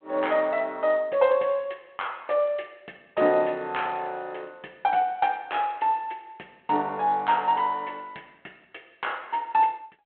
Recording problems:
phone line; 260 Hz to 3.5 kHz, G.726

